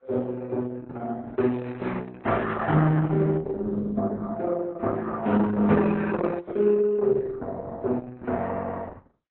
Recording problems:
lossy compression; Opus, then AAC, log-spectral distance 3 dB

